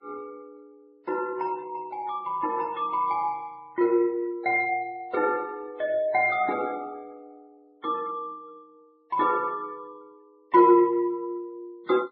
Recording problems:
lossy compression; Vorbis, then MP3, log-spectral distance 2 dB, nothing above 5.5 kHz

